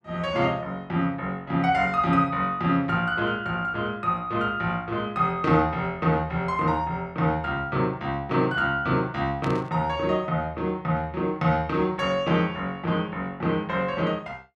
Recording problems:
static burst; at 9.5 s; peak -8 dB vs average level

